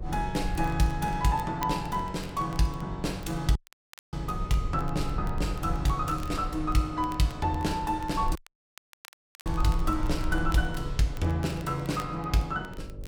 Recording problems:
hum; 50 Hz, harmonics up to 600 Hz, SNR 16 dB
rumble; below 64 Hz, SNR 9 dB
crackle; vinyl, SNR 23 dB
audio cutting out; at 3.5 s for 0.5 s and at 8.5 s for 1 s

